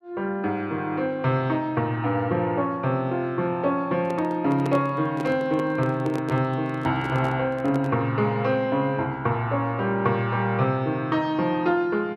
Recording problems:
microphone handling noise; from 4 to 8 s; peak -3 dB vs average level

